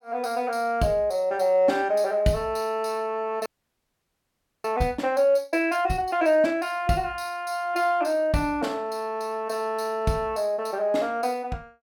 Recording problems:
frozen audio; at 3.5 s for 1 s

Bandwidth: 17 kHz